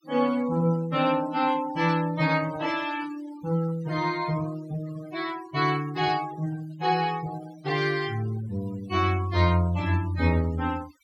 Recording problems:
noise reduction artefacts; signal-to-artefact ratio 19 dB

